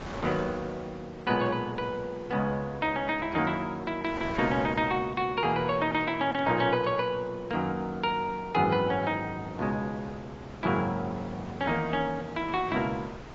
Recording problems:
lossy codec; AAC, log-spectral distance 2 dB
wind on the microphone; below 1.2 kHz, SNR 16 dB

